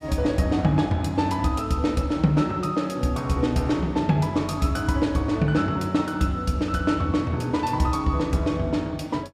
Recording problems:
none

